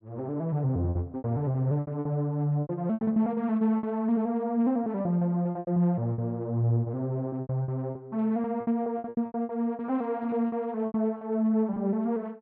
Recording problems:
packet loss; 13% of the sound replaced, filled with repeated pitch periods

